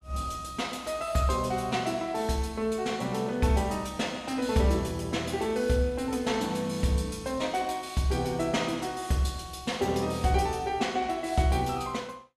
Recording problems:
none

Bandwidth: 14.5 kHz